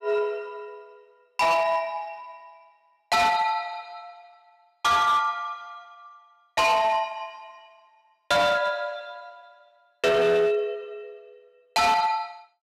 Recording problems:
distortion; hard clipping, uneven, signal-to-distortion ratio 10 dB

